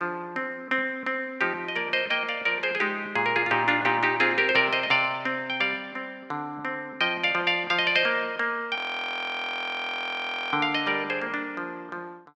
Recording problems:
audio freezing; at 9 s for 2 s

